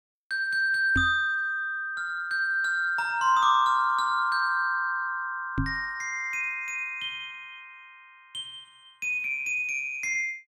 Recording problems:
microphone thump; at 1 s and at 5.5 s; peak +2 dB vs average level

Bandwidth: 16 kHz